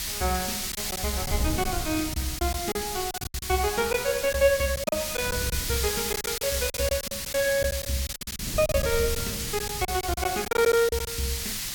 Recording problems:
background hiss; slope +4 dB per octave, SNR 3 dB
wind on the microphone; below 150 Hz, SNR 12 dB
lost packets; 11% of the sound replaced, filled with silence

